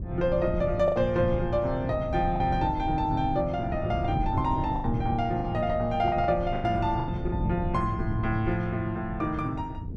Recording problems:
wind noise; below 160 Hz, SNR 7 dB
packet loss; 5% of the sound replaced, filled with the last packet

